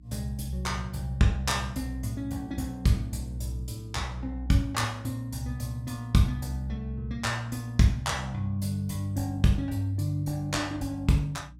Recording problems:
hum; 60 Hz, harmonics up to 300 Hz, SNR 21 dB

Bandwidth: 16.5 kHz